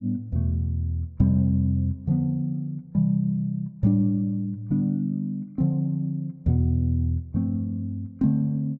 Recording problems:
none

